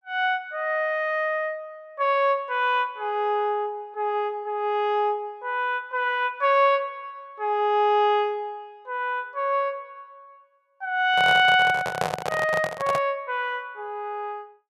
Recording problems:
microphone handling noise; from 11 to 13 s; peak +2 dB vs average level

